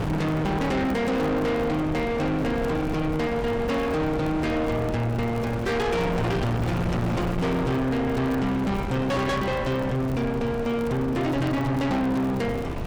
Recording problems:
distorted audio; soft clipping, signal-to-distortion ratio 7 dB
wind on the microphone; below 680 Hz, SNR 6 dB
crackle; vinyl, SNR 29 dB

